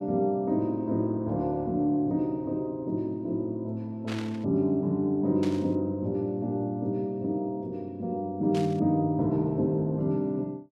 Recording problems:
burst of static; at 4 s, at 5.5 s and at 8.5 s; peak -7 dB vs average level

